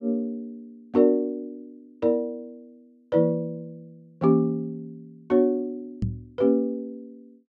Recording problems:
microphone bump; at 6 s; peak +1 dB vs average level

